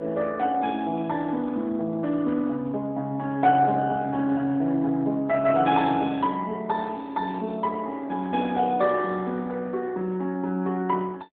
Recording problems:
phone line; 150 Hz to 3.6 kHz, AMR-NB

